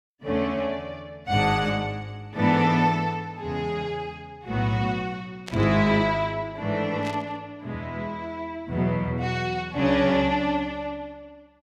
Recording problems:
static burst; at 5.5 s and at 7 s; peak -7 dB vs average level

